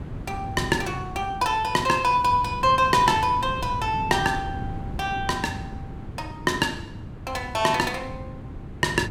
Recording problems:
wind noise; below 230 Hz, SNR 12 dB

